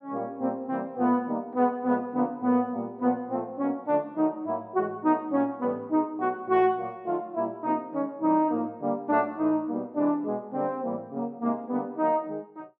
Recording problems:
none

